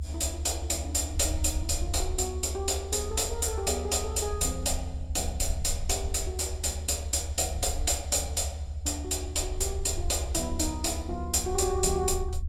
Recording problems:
rumble; below 78 Hz, SNR 6 dB

